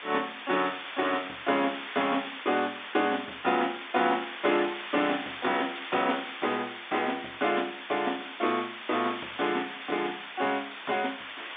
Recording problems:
phone line; 220 Hz to 3.6 kHz, G.711
background hiss; SNR 9 dB

